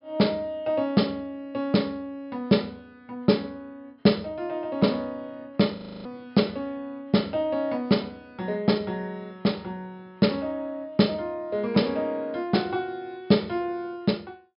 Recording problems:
low-pass filter; nothing above 5.5 kHz
frozen audio; at 6 s

